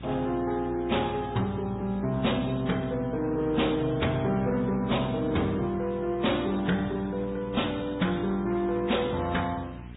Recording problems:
treble missing; nothing above 3.8 kHz
lossy codec; MP3, then AAC, log-spectral distance 7 dB
distorted audio; soft clipping, signal-to-distortion ratio 11 dB
hum; 60 Hz, harmonics up to 420 Hz, SNR 14 dB
background hiss; SNR 26 dB

